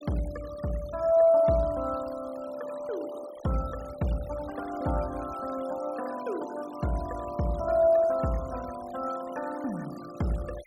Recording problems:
denoising artefacts; signal-to-artefact ratio 19 dB

